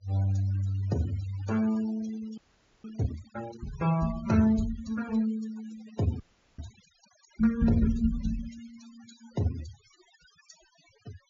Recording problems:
treble cut off; nothing above 7.2 kHz
noise reduction artefacts; signal-to-artefact ratio 19 dB
audio freezing; at 2.5 s and at 6 s

